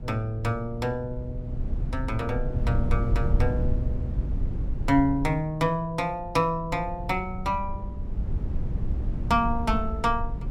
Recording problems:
low-frequency rumble; below 98 Hz, SNR 3 dB

